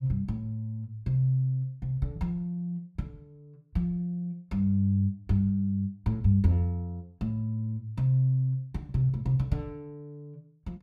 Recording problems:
none

